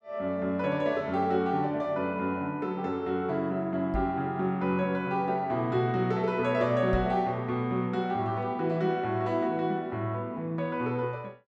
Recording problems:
microphone thump; at 4 s and at 7 s; peak 0 dB vs average level

